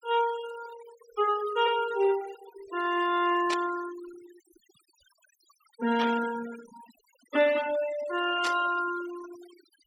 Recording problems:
noise reduction artefacts; signal-to-artefact ratio 16 dB
static burst; at 3.5 s, at 6 s and at 8.5 s; peak -1 dB vs average level

